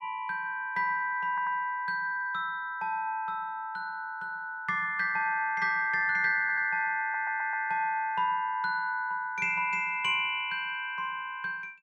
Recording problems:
audio stuttering; at 1.5 s, at 6.5 s and at 7 s

